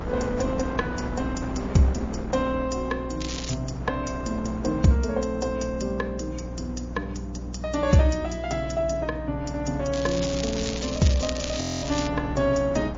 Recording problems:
codec artefacts; MP3, log-spectral distance 6 dB, nothing above 6.7 kHz
hum; 60 Hz, harmonics up to 300 Hz, SNR 10 dB
wind noise; below 730 Hz, SNR 12 dB
crackling; at 3 s and from 10 to 12 s; loose cable, SNR 8 dB
audio freezing; at 12 s

